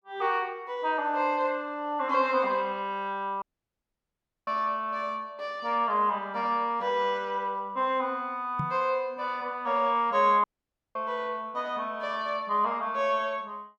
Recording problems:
dropout; at 3.5 s for 1 s and at 10 s for 0.5 s
microphone thump; at 8.5 s; peak -1 dB vs average level

